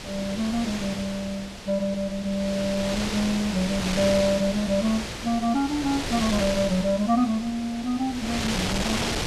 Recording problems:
wind noise; below 4.5 kHz, SNR 5 dB

